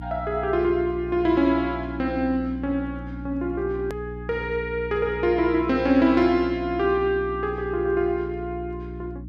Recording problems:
hum; 60 Hz, harmonics up to 300 Hz, SNR 12 dB
hard cut with a click; at 4 s

